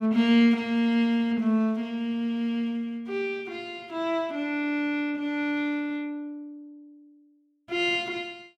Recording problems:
none

